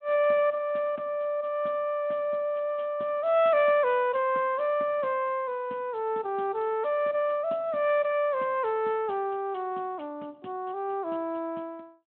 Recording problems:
telephone audio; 190 Hz to 3.5 kHz, Speex

